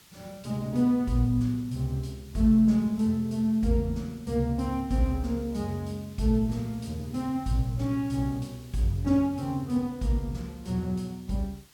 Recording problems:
background hiss; SNR 26 dB

